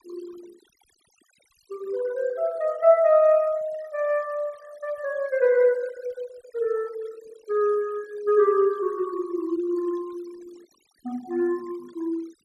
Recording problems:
noise reduction artefacts; signal-to-artefact ratio 25 dB

